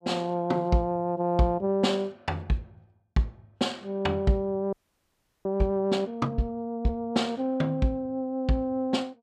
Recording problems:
audio freezing; at 4.5 s for 0.5 s

